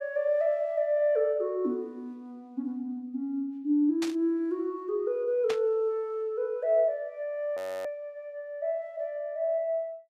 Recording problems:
static burst; at 4 s and at 5.5 s; peak -3 dB vs average level
frozen audio; at 7.5 s

